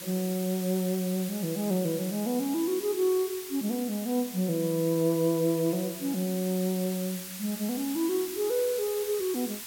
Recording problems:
hiss; SNR 9 dB

